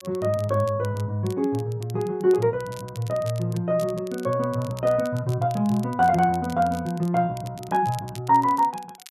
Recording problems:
crackle; vinyl, SNR 22 dB

